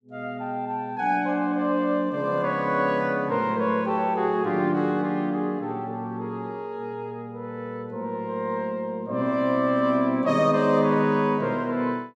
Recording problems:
none

